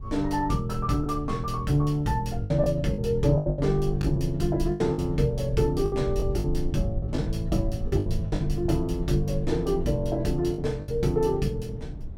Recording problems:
rumble; below 74 Hz, SNR 9 dB
wind on the microphone; below 220 Hz, SNR 17 dB
lost packets; 8% of the sound replaced, filled with the last packet

